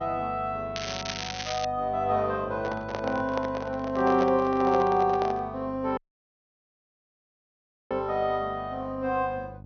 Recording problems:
treble missing; nothing above 6.4 kHz
electrical hum; 50 Hz, harmonics up to 600 Hz, SNR 17 dB
crackle; at 1 s; loose cable, SNR 7 dB
handling noise; from 2.5 to 5.5 s; peak -1 dB vs average level
dropout; at 6 s for 2 s

